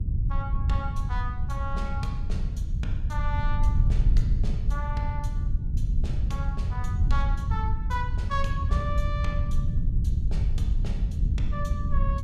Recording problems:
low-frequency rumble; below 86 Hz, SNR -8 dB

